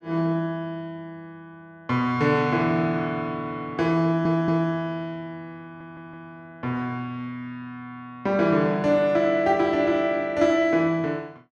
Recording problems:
audio stuttering; at 4 s and at 5.5 s

